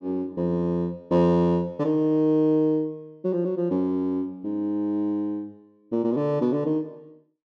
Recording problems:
none

